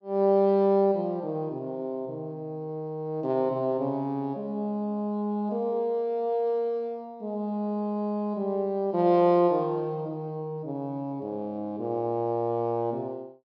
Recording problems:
low-pass filter; nothing above 8 kHz

